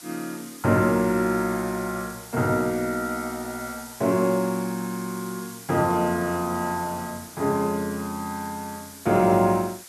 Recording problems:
background hiss; SNR 16 dB

